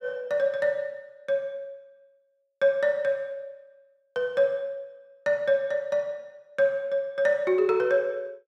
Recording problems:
none

